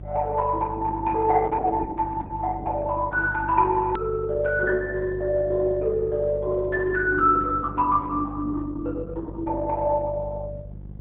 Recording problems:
treble missing; nothing above 4 kHz
lossy compression; Opus, log-spectral distance 3 dB
electrical hum; 50 Hz, harmonics up to 400 Hz, SNR 14 dB
edit click; at 4 s

